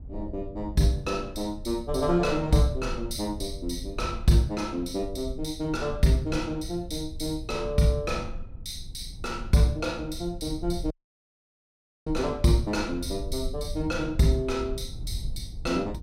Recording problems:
low-frequency rumble; below 78 Hz, SNR 11 dB
dropout; at 11 s for 1 s

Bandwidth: 16.5 kHz